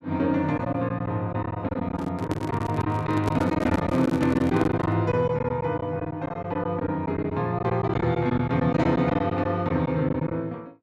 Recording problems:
lost packets; 10% of the sound replaced, filled with silence
handling noise; from 2 to 5 s; peak +2 dB vs average level

